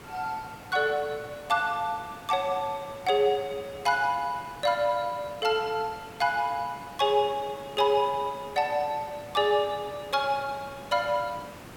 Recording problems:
hiss; slope -5 dB per octave, SNR 17 dB

